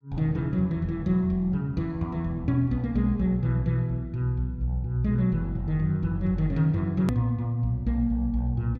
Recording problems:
hard cut with a click; at 7 s

